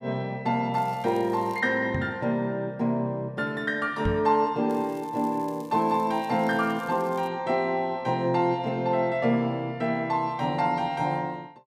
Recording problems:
crackling; at 0.5 s and from 4.5 to 7.5 s; loose cable, SNR 27 dB
microphone thump; at 2 s and at 4 s; peak +1 dB vs average level

